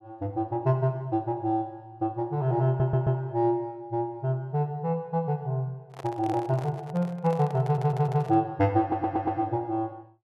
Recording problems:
stutter; at 2.5 s, at 7.5 s and at 9 s
microphone handling noise; from 6 to 8.5 s; peak -9 dB vs average level

